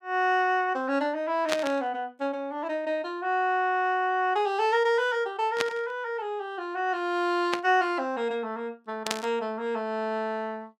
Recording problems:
burst of static; 4 times, first at 1.5 s; peak +4 dB vs average level

